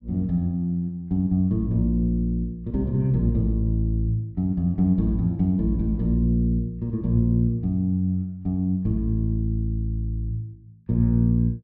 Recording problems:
none

